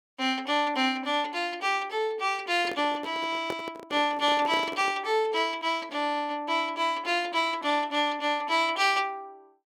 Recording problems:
handling noise; from 2.5 to 5 s; peak -3 dB vs average level

